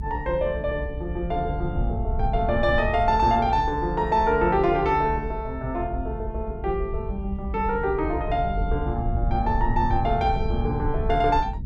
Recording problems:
rumble; below 84 Hz, SNR 6 dB

